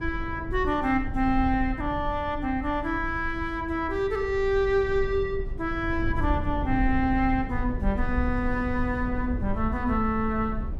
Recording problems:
rumble; below 84 Hz, SNR 7 dB

